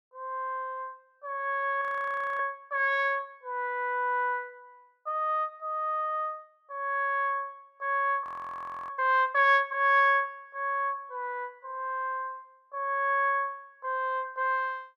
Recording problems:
audio freezing; at 2 s for 0.5 s and at 8 s for 0.5 s

